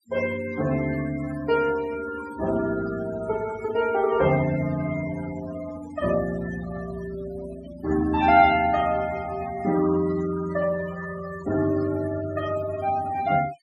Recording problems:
denoising artefacts; signal-to-artefact ratio 14 dB

